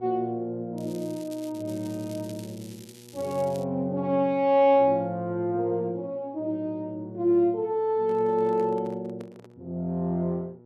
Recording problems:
electrical hum; 60 Hz, harmonics up to 960 Hz, SNR 24 dB
crackling; from 1 to 3.5 s; loose cable, SNR 22 dB
handling noise; from 8 to 9.5 s; peak -12 dB vs average level

